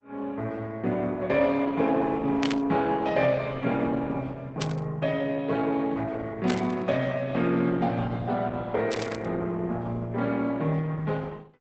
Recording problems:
lossy compression; Opus, log-spectral distance 3 dB, nothing above 7.3 kHz
static burst; 4 times, first at 2.5 s; peak -1 dB vs average level

